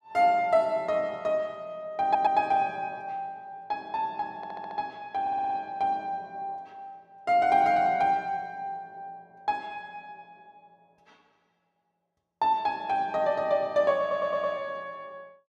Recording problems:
stutter; 4 times, first at 2 s

